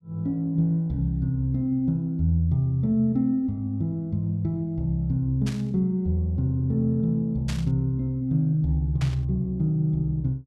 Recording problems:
burst of static; at 5.5 s, at 7.5 s and at 9 s; peak -6 dB vs average level

